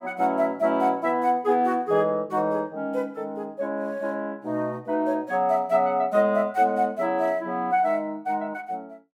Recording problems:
none

